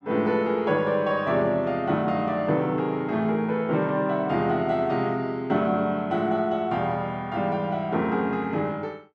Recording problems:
none

